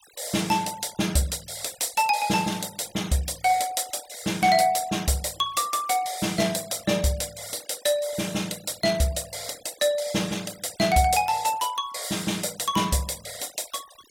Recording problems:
noise reduction artefacts; signal-to-artefact ratio 19 dB

